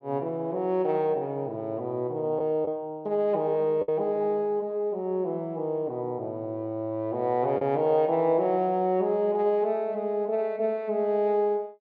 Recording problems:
lost packets; 1% of the sound replaced, filled with the last packet

